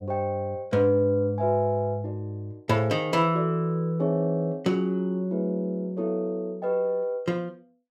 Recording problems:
none

